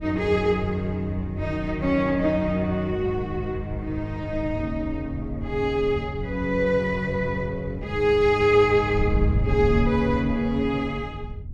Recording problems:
wind noise; below 100 Hz, SNR 9 dB

